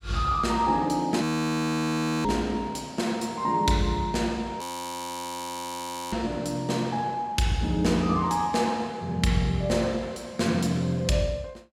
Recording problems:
frozen audio; at 1 s for 1 s and at 4.5 s for 1.5 s

